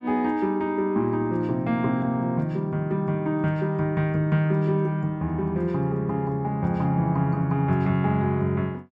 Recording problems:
none

